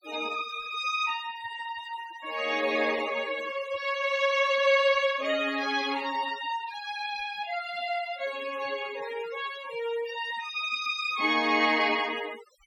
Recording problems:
noise reduction artefacts; signal-to-artefact ratio 15 dB

